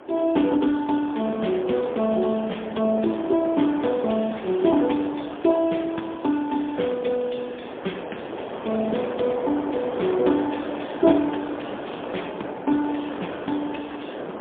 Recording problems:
phone line; 170 Hz to 3.4 kHz, AMR-NB, then MP3
wind on the microphone; below 850 Hz, SNR 9 dB

